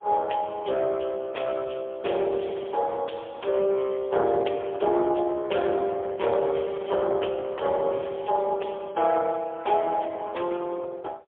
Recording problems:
telephone audio; 340 Hz to 3.3 kHz, AMR-NB, then MP3

